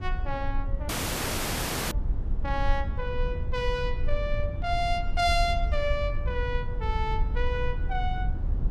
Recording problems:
rumble; below 68 Hz, SNR 1 dB
dropout; at 1 s for 1 s

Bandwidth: 14.5 kHz